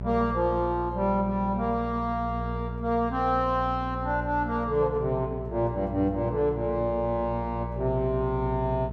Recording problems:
hum; 60 Hz, harmonics up to 840 Hz, SNR 8 dB

